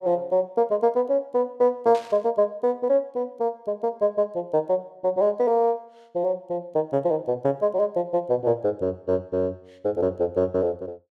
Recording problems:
static burst; at 2 s; peak -12 dB vs average level

